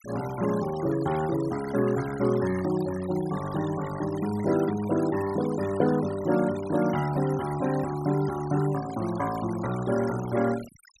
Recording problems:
denoising artefacts; signal-to-artefact ratio 15 dB

